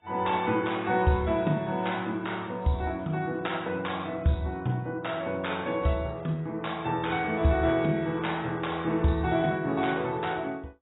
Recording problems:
codec artefacts; AAC, log-spectral distance 4 dB, nothing above 3.8 kHz

